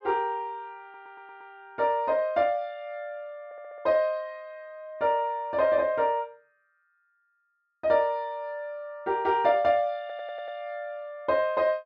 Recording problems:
stutter; at 1 s, at 3.5 s and at 10 s

